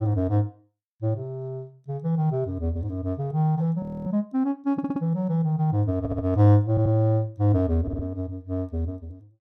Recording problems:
frozen audio; at 4 s
stutter; 4 times, first at 4.5 s

